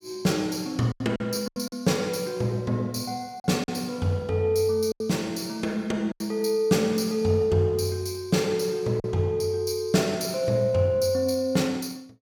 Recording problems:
lost packets; 4% of the sound replaced, filled with silence

